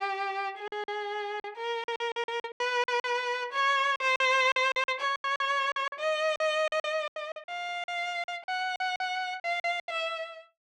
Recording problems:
lost packets; 15% of the sound replaced, filled with silence

